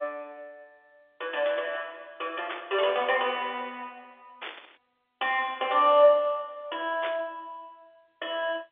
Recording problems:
phone line; 280 Hz to 3.6 kHz, G.711
static burst; at 2.5 s, at 4.5 s and at 7 s; peak -5 dB vs average level

